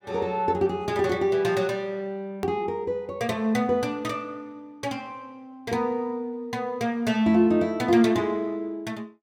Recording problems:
hard cut with a click; at 2.5 s

